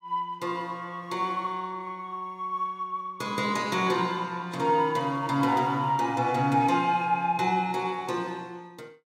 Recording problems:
none

